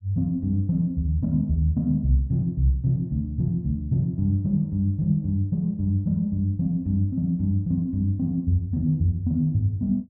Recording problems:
none

